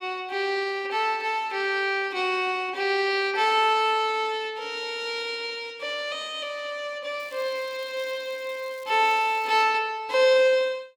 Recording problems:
crackle; from 7 to 9.5 s; loose cable, SNR 27 dB

